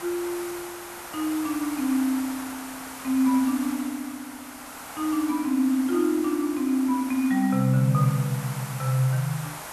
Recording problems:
hiss; SNR 12 dB

